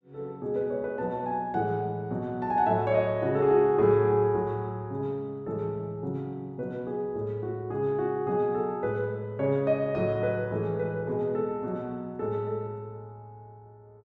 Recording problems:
none

